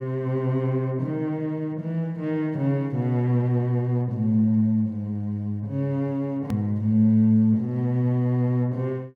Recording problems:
edit click; at 6.5 s

